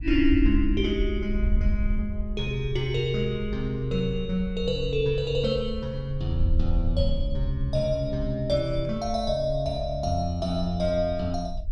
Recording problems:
wind on the microphone; below 62 Hz, SNR 6 dB

